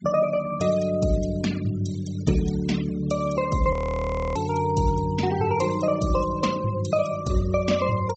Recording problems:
treble missing; nothing above 8 kHz
denoising artefacts; signal-to-artefact ratio 14 dB
audio freezing; at 3.5 s for 0.5 s

